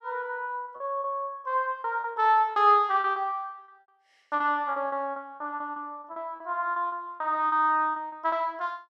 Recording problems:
packet loss; 13% of the sound replaced, filled with repeated pitch periods

